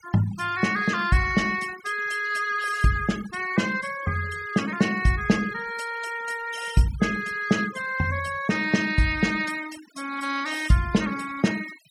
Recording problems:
denoising artefacts; signal-to-artefact ratio 16 dB

